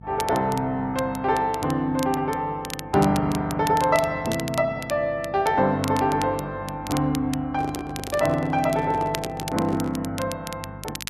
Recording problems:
hum; 50 Hz, harmonics up to 450 Hz, SNR 18 dB
crackle; vinyl, SNR 14 dB
handling noise; from 7.5 to 10 s; peak -6 dB vs average level

